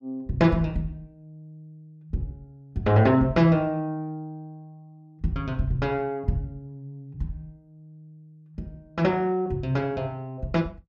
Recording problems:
none

